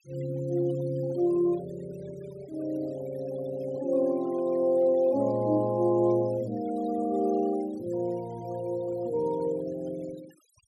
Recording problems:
noise reduction artefacts; signal-to-artefact ratio 22 dB

